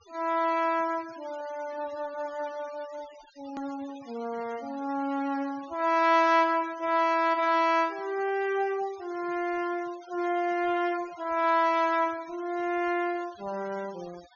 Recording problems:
treble missing; nothing above 6.8 kHz
denoising artefacts; signal-to-artefact ratio 22 dB
edit click; at 3.5 s

